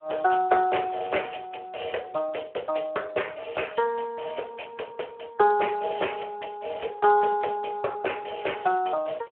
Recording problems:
telephone audio; 340 Hz to 3.2 kHz, Speex

